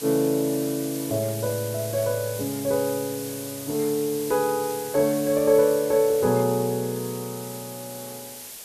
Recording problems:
background hiss; SNR 11 dB

